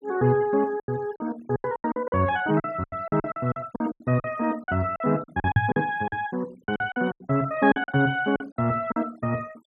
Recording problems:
denoising artefacts; signal-to-artefact ratio 23 dB
lost packets; 16% of the sound replaced, filled with silence
microphone bump; at 5.5 s; peak +8 dB vs average level

